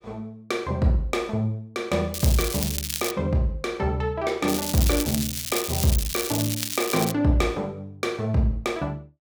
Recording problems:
crackling; at 2 s and from 4.5 to 7 s; loose cable, SNR 3 dB

